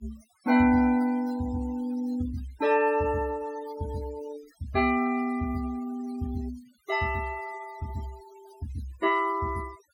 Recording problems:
noise reduction artefacts; signal-to-artefact ratio 19 dB

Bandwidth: 17 kHz